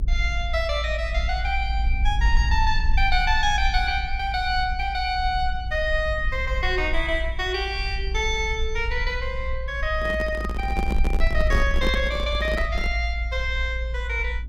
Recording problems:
low-frequency rumble; below 58 Hz, SNR 3 dB
microphone handling noise; from 10 to 13 s; peak +1 dB vs average level

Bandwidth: 16.5 kHz